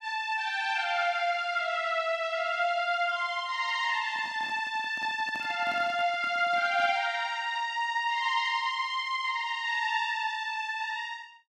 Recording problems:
handling noise; from 4 to 7 s; peak -12 dB vs average level

